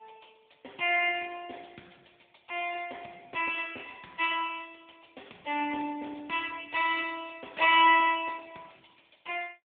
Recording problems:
telephone audio; 370 Hz to 3.5 kHz, AMR-NB

